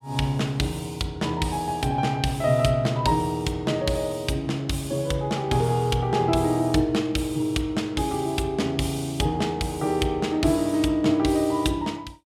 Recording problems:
none

